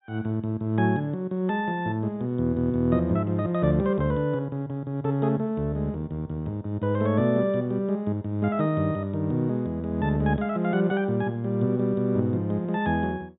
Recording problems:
treble cut off; nothing above 4 kHz

